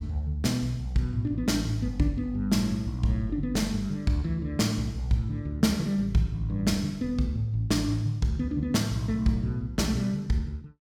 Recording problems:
none

